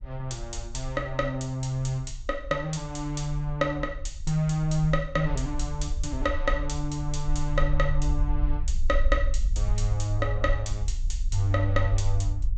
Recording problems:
treble missing; nothing above 8 kHz
rumble; below 48 Hz, strongest tone 22 Hz, SNR 3 dB

